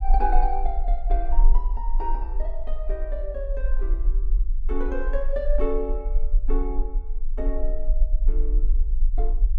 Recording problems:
low-frequency rumble; below 38 Hz, strongest tone 20 Hz, SNR -5 dB

